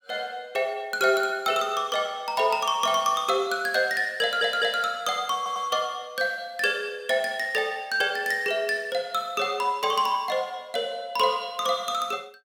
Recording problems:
stutter; at 4 s and at 5.5 s

